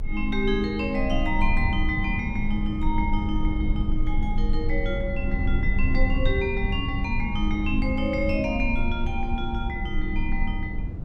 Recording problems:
rumble; below 68 Hz, strongest tone 22 Hz, SNR 1 dB

